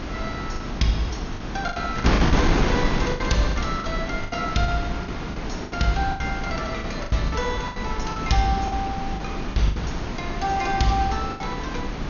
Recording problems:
lossy compression; MP2, log-spectral distance 3 dB, nothing above 6.7 kHz
wind noise; below 600 Hz, SNR 2 dB
lost packets; 11% of the sound replaced, filled with the last packet

